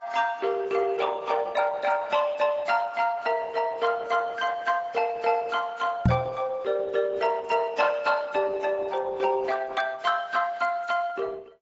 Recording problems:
codec artefacts; Opus, then AAC, log-spectral distance 4 dB, nothing above 7.6 kHz
microphone thump; at 6 s; peak +9 dB vs average level

